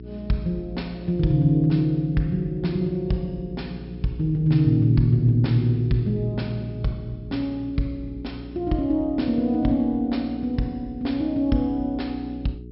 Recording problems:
treble missing; nothing above 5.4 kHz
electrical hum; 60 Hz, harmonics up to 420 Hz, SNR 16 dB

